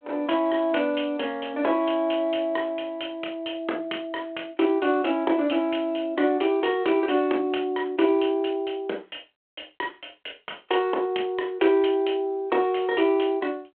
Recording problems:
telephone audio; 280 Hz to 3.4 kHz, G.726

